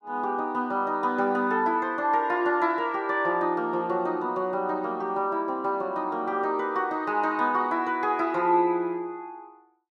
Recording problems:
none

